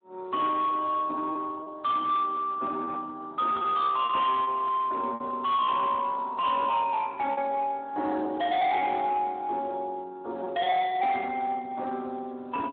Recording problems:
phone line; 220 Hz to 3.6 kHz, Speex
distorted audio; soft clipping, signal-to-distortion ratio 12 dB
lost packets; 5% of the sound replaced, filled with repeated pitch periods

